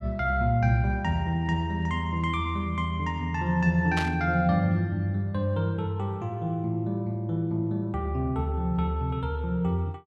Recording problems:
burst of static; at 4 s; peak -1 dB vs average level

